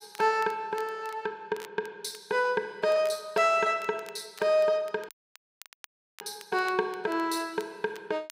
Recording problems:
crackle; vinyl, SNR 23 dB
dropout; at 5 s for 1 s

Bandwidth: 15.5 kHz